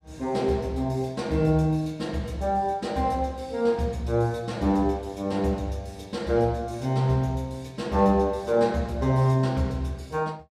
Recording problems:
none

